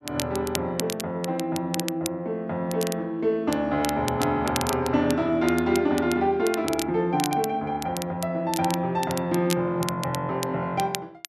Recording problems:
crackle; vinyl, SNR 10 dB

